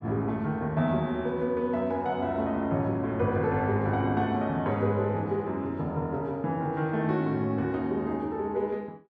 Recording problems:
none

